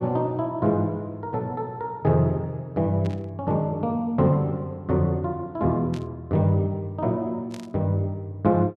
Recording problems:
burst of static; at 3 s, at 6 s and at 7.5 s; peak -14 dB vs average level

